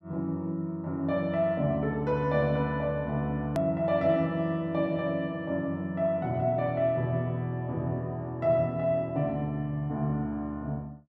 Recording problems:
hard cut with a click; at 3.5 s

